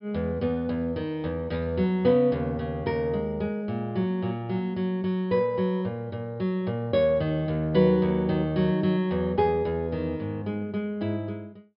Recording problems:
treble cut off; nothing above 5.5 kHz

